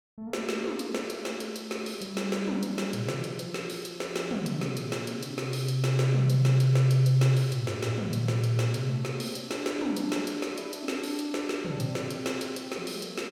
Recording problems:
none

